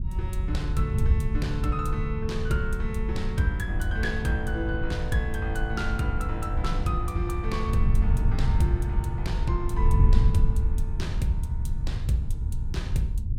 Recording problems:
wind on the microphone; below 88 Hz, SNR -3 dB

